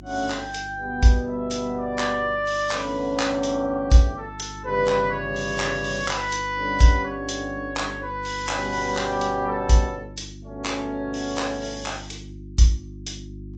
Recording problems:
low-pass filter; nothing above 8 kHz
lossy codec; MP3, log-spectral distance 3 dB
mains hum; 50 Hz, harmonics up to 350 Hz, SNR 17 dB

